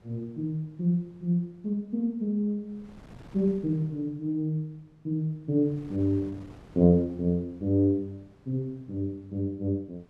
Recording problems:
wind noise; below 460 Hz, SNR 25 dB

